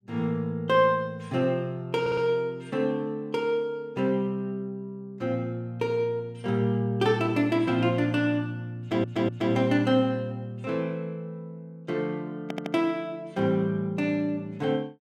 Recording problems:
stutter; at 2 s, at 9 s and at 12 s

